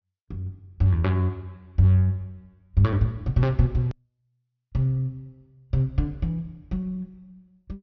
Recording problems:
treble missing; nothing above 6.5 kHz
edit click; at 4 s

